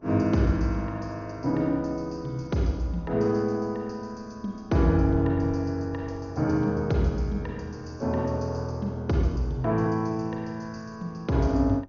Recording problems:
lossy compression; MP2, log-spectral distance 2 dB, nothing above 6.2 kHz
wind noise; below 380 Hz, SNR 22 dB

